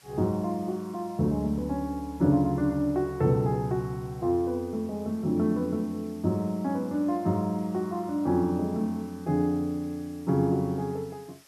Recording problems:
background hiss; slope +1 dB per octave, SNR 27 dB

